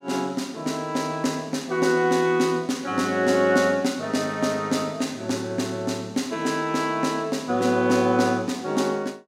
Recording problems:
none

